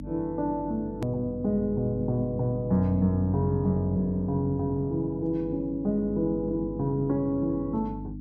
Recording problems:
hum; 50 Hz, harmonics up to 300 Hz, SNR 11 dB
edit click; at 1 s

